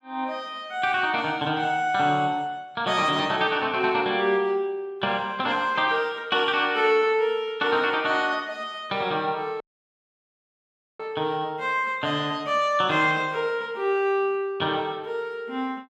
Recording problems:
dropout; at 9.5 s for 1.5 s

